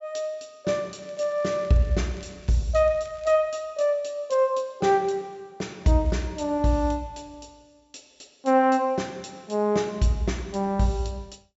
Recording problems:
treble missing; nothing above 7.6 kHz
crackling; from 1 to 2.5 s, at 3 s and at 6 s; loose cable, SNR 29 dB

